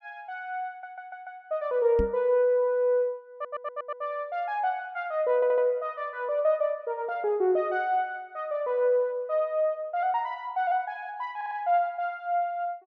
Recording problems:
stutter; 4 times, first at 0.5 s
knock on the microphone; at 2 s; peak +1 dB vs average level

